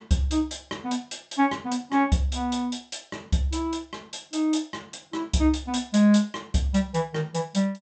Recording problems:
treble cut off; nothing above 8 kHz

